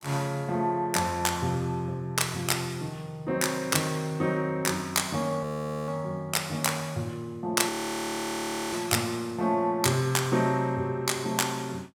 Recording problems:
frozen audio; at 5.5 s and at 7.5 s for 1 s

